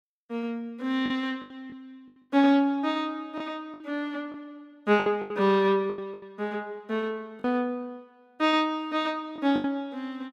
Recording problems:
lost packets; 7% of the sound replaced, filled with the last packet

